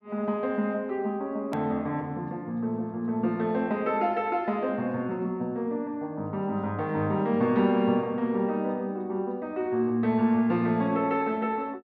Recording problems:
click at an edit; at 1.5 s

